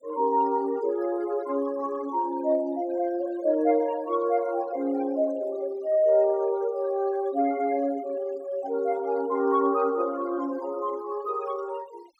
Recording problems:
denoising artefacts; signal-to-artefact ratio 23 dB

